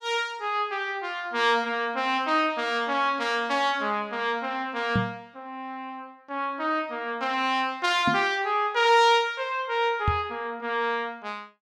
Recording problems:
microphone bump; at 5 s, at 8 s and at 10 s; peak +3 dB vs average level

